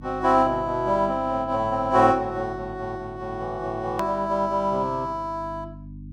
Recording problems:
hum; 50 Hz, harmonics up to 300 Hz, SNR 17 dB
edit click; at 4 s

